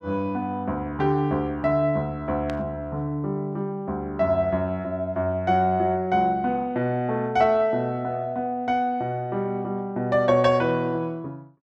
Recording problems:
burst of static; at 2.5 s; peak -10 dB vs average level

